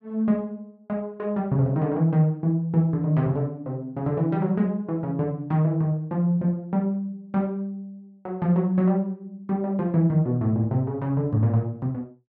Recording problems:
none

